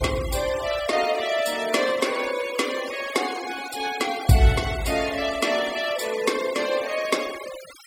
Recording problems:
denoising artefacts; signal-to-artefact ratio 12 dB

